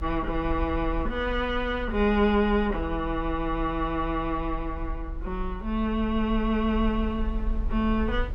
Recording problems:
low-frequency rumble; below 58 Hz, strongest tone 36 Hz, SNR 9 dB

